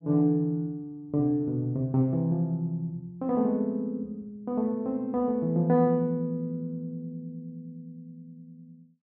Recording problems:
none

